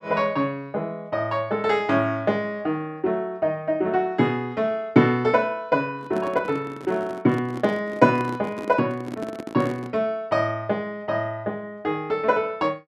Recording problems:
microphone handling noise; from 6 to 10 s; peak -5 dB vs average level

